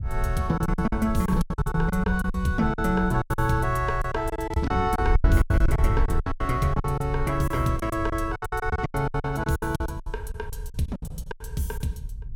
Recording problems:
wind on the microphone; below 74 Hz, SNR 5 dB
packet loss; 18% of the sound replaced, filled with silence

